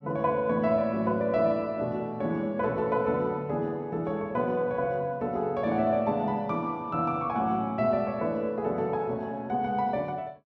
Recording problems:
none

